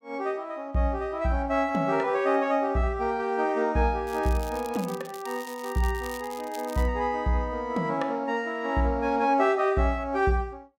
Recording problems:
crackling; from 4 to 7 s; loose cable, SNR 18 dB

